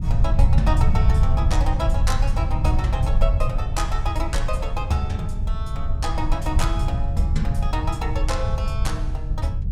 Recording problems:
low-frequency rumble; below 82 Hz, SNR -5 dB
wind on the microphone; below 160 Hz, SNR 13 dB

